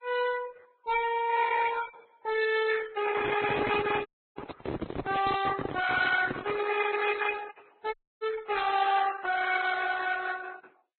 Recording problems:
lossy codec; Opus, then Vorbis, log-spectral distance 6 dB, nothing above 4 kHz
distorted audio; hard clipping, uneven, signal-to-distortion ratio 10 dB
microphone handling noise; from 3 to 6.5 s; peak +1 dB vs average level
dropout; at 4 s and at 8 s

